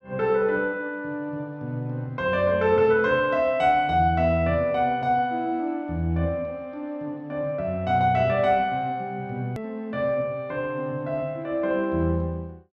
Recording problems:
edit click; at 9.5 s

